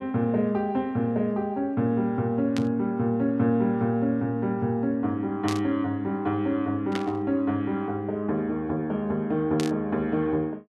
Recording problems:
burst of static; 4 times, first at 2.5 s; peak -3 dB vs average level

